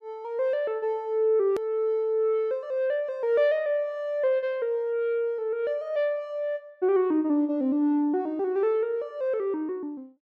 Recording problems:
edit click; at 1.5 s

